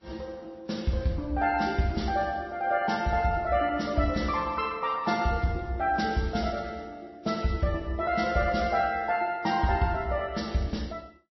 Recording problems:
lossy codec; Vorbis, then MP3, log-spectral distance 3 dB, nothing above 5.7 kHz

